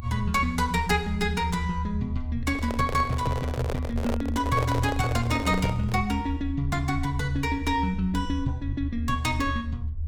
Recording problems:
low-frequency rumble; below 80 Hz, SNR 5 dB
microphone handling noise; from 2.5 to 6 s; peak +1 dB vs average level

